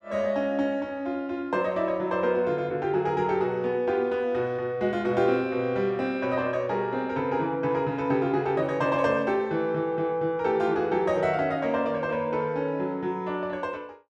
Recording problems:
none

